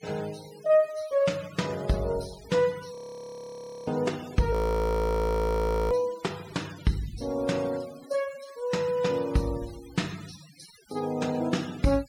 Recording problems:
denoising artefacts; signal-to-artefact ratio 19 dB
frozen audio; at 3 s for 1 s and at 4.5 s for 1.5 s

